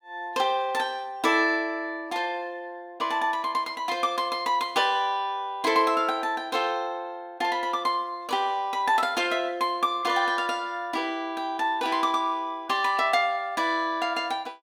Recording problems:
none

